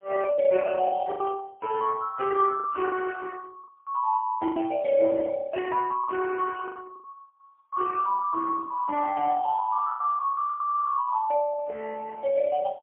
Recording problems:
phone line; 240 Hz to 3.1 kHz, AMR-NB, then MP3
lost packets; 6% of the sound replaced, filled with the last packet

